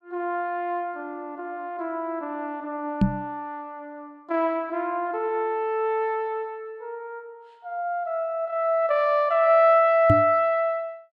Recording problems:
microphone bump; at 3 s and at 10 s; peak +8 dB vs average level

